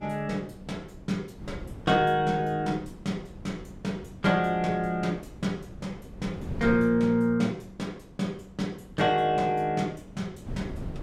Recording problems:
wind on the microphone; below 250 Hz, SNR 16 dB

